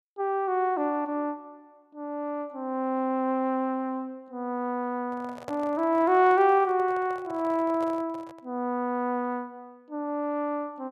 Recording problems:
microphone handling noise; from 5 to 8.5 s; peak -6 dB vs average level

